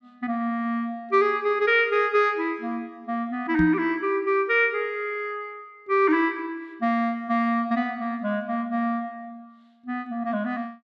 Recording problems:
microphone bump; at 3.5 s; peak +1 dB vs average level

